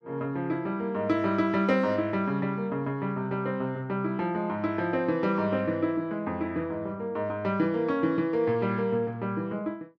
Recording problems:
none

